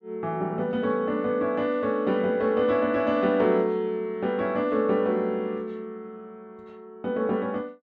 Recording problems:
none

